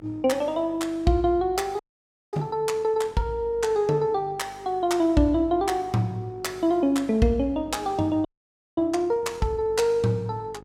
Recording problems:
electrical hum; 50 Hz, harmonics up to 1.4 kHz, SNR 25 dB
audio freezing; at 2 s for 0.5 s and at 8.5 s for 0.5 s

